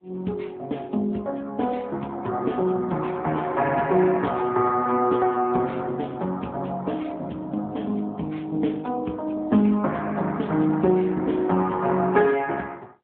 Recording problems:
phone line; 110 Hz to 3.4 kHz, AMR-NB

